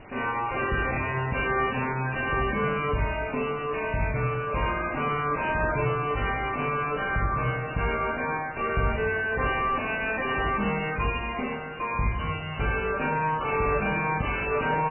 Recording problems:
lossy codec; MP3, log-spectral distance 8 dB, nothing above 2.4 kHz
distorted audio; soft clipping, signal-to-distortion ratio 2 dB
background hiss; SNR 14 dB
crackling; at 7.5 s; loose cable, SNR 19 dB

